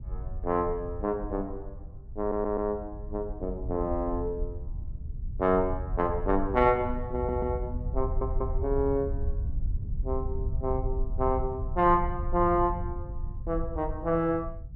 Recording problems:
low-frequency rumble; below 76 Hz, SNR 7 dB
audio stuttering; at 2 s, at 7 s and at 8 s

